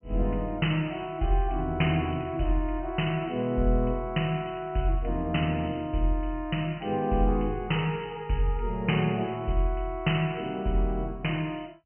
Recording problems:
treble missing; nothing above 3 kHz

